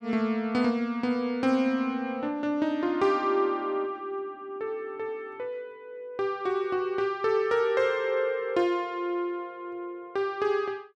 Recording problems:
none

